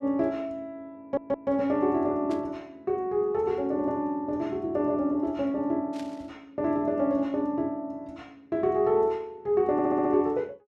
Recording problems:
stutter; at 1 s and at 9.5 s
static burst; at 2.5 s and at 6 s; peak -14 dB vs average level

